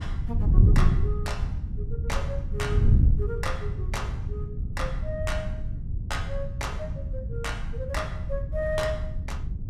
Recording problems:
wind on the microphone; below 110 Hz, SNR -6 dB

